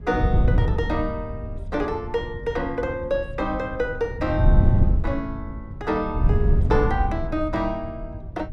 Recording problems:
wind noise; below 110 Hz, SNR -2 dB

